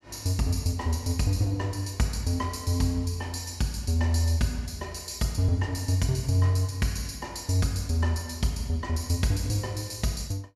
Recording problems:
none

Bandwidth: 14.5 kHz